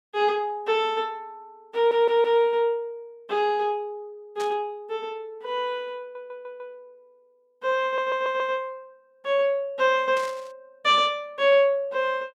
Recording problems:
audio stuttering; at 2 s, at 6 s and at 8 s
static burst; at 4.5 s and at 10 s; peak -10 dB vs average level

